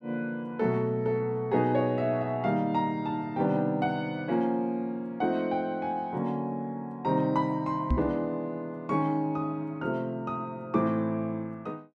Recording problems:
microphone bump; at 8 s; peak +6 dB vs average level

